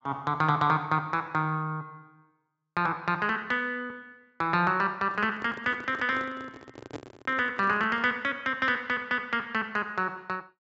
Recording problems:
treble missing; nothing above 7.6 kHz
microphone handling noise; from 5 to 8 s; peak -6 dB vs average level

